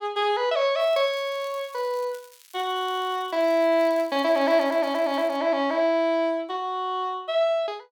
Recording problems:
crackling; from 1 to 5.5 s; loose cable, SNR 26 dB

